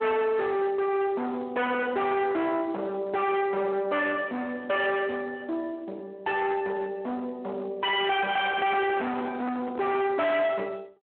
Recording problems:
phone line; 300 Hz to 3.5 kHz, Speex
distortion; hard clipping, signal-to-distortion ratio 6 dB
handling noise; from 8.5 to 10 s; peak -6 dB vs average level

